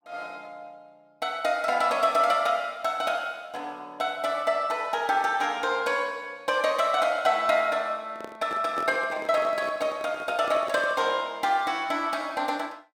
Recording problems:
handling noise; from 8 to 11 s; peak -6 dB vs average level

